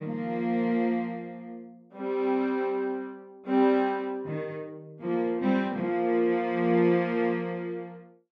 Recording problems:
none

